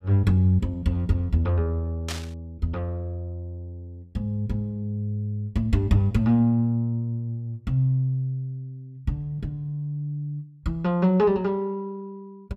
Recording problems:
burst of static; at 2 s; peak -3 dB vs average level

